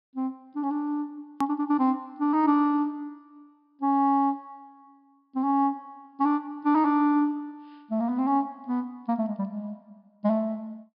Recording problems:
treble missing; nothing above 5.5 kHz
click at an edit; at 1.5 s

